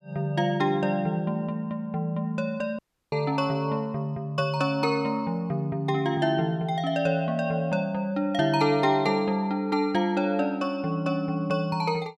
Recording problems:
dropout; at 3 s

